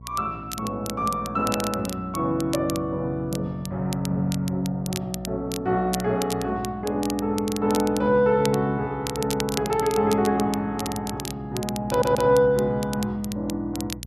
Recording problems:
mains hum; 60 Hz, harmonics up to 480 Hz, SNR 18 dB
crackle; vinyl, SNR 12 dB
stutter; at 12 s

